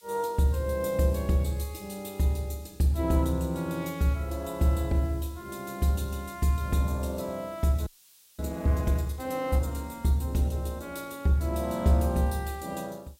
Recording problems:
hiss; slope +3 dB per octave, SNR 27 dB
frozen audio; at 8 s for 0.5 s

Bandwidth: 16 kHz